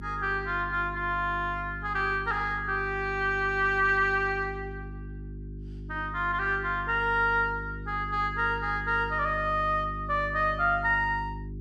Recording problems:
mains hum; 50 Hz, harmonics up to 400 Hz, SNR 12 dB

